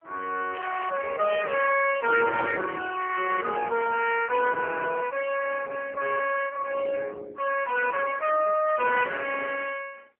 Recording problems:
telephone audio; 390 Hz to 2.5 kHz, AMR-NB
crackle; at 0.5 s; loose cable, SNR 15 dB

